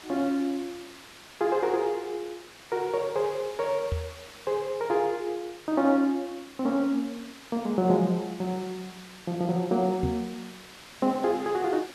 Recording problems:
hiss; SNR 18 dB
knock on the microphone; at 4 s and at 10 s; peak +2 dB vs average level

